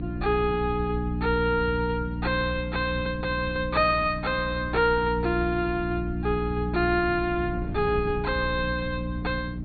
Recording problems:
treble cut off; nothing above 4.4 kHz
electrical hum; 60 Hz, harmonics up to 300 Hz, SNR 6 dB
wind noise; below 150 Hz, SNR 14 dB

